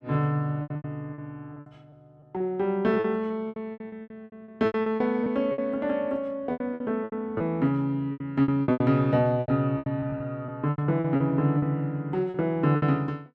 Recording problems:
lost packets; 17% of the sound replaced, filled with repeated pitch periods

